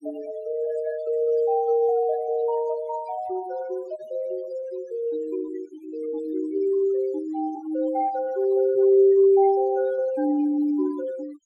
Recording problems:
noise reduction artefacts; signal-to-artefact ratio 22 dB

